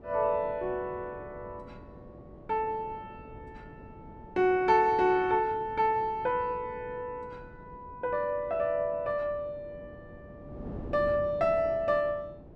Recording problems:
wind on the microphone; below 370 Hz, SNR 18 dB

